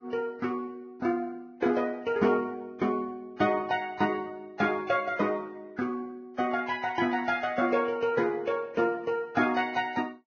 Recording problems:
codec artefacts; Vorbis, log-spectral distance 3 dB, nothing above 6.3 kHz

